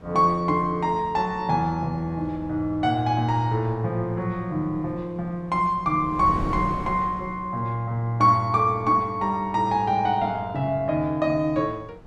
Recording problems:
wind on the microphone; below 380 Hz, SNR 17 dB

